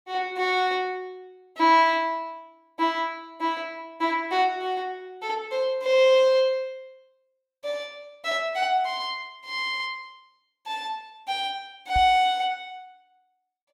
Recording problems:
microphone bump; at 12 s; peak -3 dB vs average level

